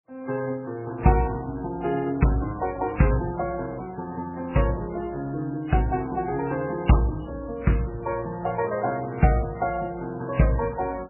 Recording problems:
codec artefacts; Vorbis, then MP3, log-spectral distance 3 dB, nothing above 2.8 kHz

